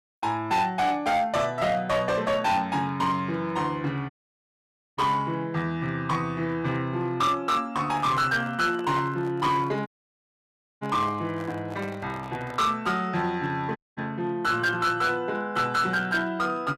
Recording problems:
distorted audio; hard clipping, uneven, signal-to-distortion ratio 10 dB
dropout; at 4 s for 1 s, at 10 s for 1 s and at 14 s
handling noise; from 8 to 13 s; peak -9 dB vs average level

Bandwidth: 14.5 kHz